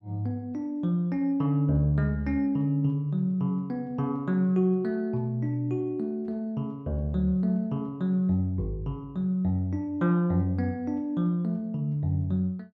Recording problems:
none

